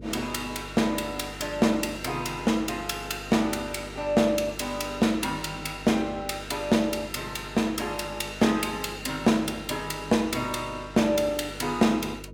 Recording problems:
mains hum; 50 Hz, harmonics up to 500 Hz, SNR 17 dB

